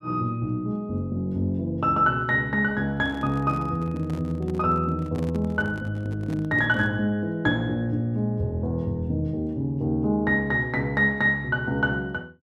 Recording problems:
microphone handling noise; from 3 to 7 s; peak -10 dB vs average level

